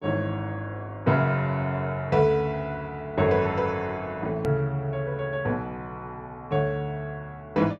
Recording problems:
click at an edit; at 4.5 s

